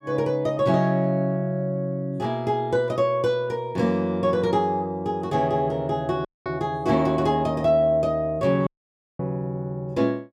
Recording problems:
dropout; at 6.5 s and at 8.5 s for 0.5 s

